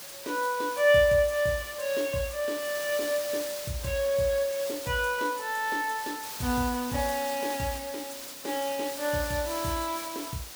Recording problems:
background hiss; slope 0 dB per octave, SNR 9 dB

